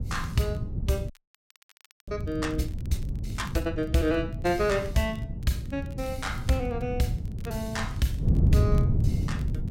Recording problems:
wind noise; below 150 Hz, SNR 1 dB
crackling; vinyl, SNR 28 dB
audio freezing; at 1 s for 1 s

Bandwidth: 16.5 kHz